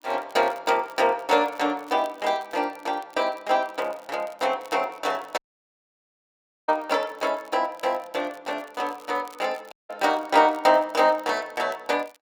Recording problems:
crackling; vinyl, SNR 28 dB
dropout; at 5.5 s for 1.5 s and at 9.5 s

